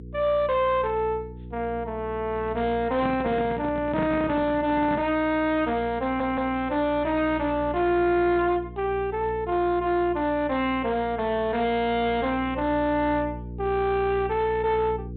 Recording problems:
treble cut off; nothing above 4 kHz
distorted audio; hard clipping, signal-to-distortion ratio 11 dB
hum; 60 Hz, harmonics up to 480 Hz, SNR 15 dB
handling noise; from 3 to 5 s; peak -1 dB vs average level
stutter; at 6 s

